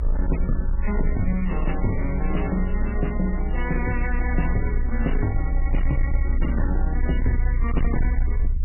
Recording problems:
codec artefacts; MP3, log-spectral distance 2 dB, nothing above 2.9 kHz
distorted audio; soft clipping, signal-to-distortion ratio 10 dB
rumble; below 60 Hz, strongest tone 26 Hz, SNR -1 dB

